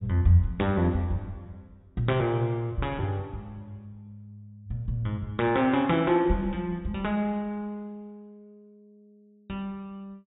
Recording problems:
treble missing; nothing above 4 kHz

